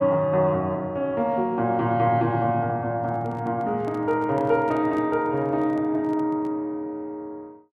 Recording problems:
microphone handling noise; from 3 to 6.5 s; peak -10 dB vs average level

